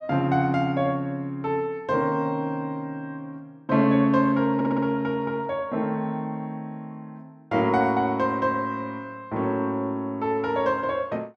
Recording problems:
stutter; at 4.5 s

